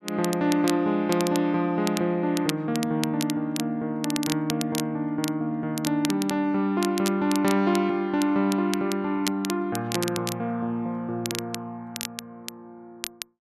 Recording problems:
crackling; vinyl, SNR 10 dB

